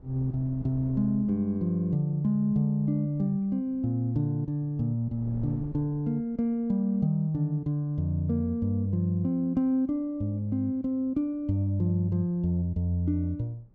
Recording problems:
wind on the microphone; below 230 Hz, SNR 22 dB

